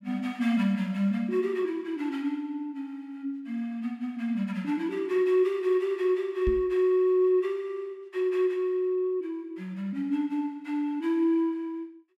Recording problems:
microphone bump; at 6.5 s; peak 0 dB vs average level

